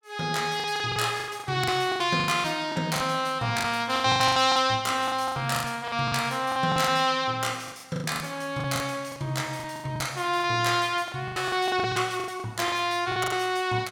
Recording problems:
packet loss; 17% of the sound replaced, filled with the last packet

